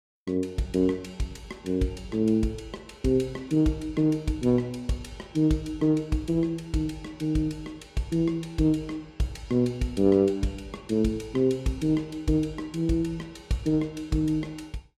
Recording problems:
none

